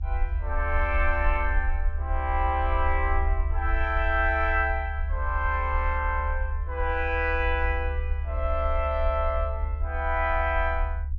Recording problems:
low-pass filter; nothing above 7.4 kHz
low-frequency rumble; below 72 Hz, SNR 2 dB

